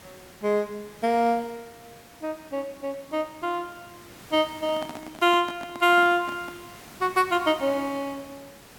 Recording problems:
hiss; slope -3 dB per octave, SNR 21 dB
handling noise; from 4.5 to 6.5 s; peak -8 dB vs average level

